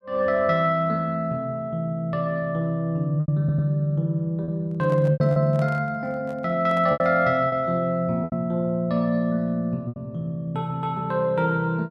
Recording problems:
packet loss; 4% of the sound replaced, filled with repeated pitch periods
audio stuttering; at 3.5 s
microphone handling noise; from 4.5 to 7 s; peak -11 dB vs average level

